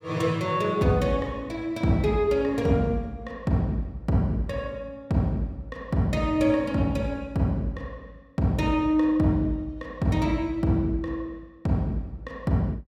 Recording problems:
none

